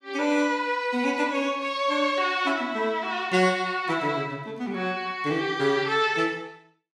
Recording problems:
none

